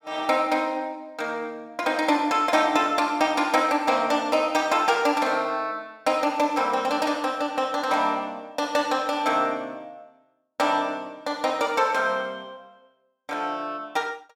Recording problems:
none

